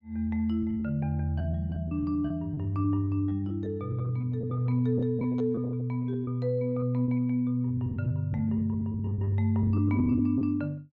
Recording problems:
lost packets; 13% of the sound replaced, filled with repeated pitch periods

